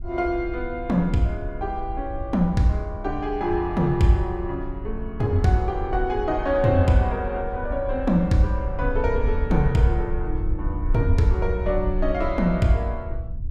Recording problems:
wind on the microphone; below 66 Hz, SNR 8 dB

